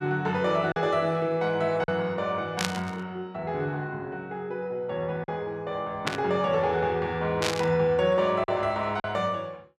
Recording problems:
lost packets; 2% of the sound replaced, filled with silence
burst of static; at 2.5 s, at 6 s and at 7.5 s; peak +4 dB vs average level

